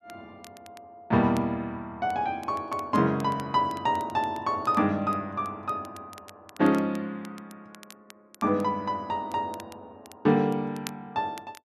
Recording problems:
crackling; vinyl, SNR 23 dB

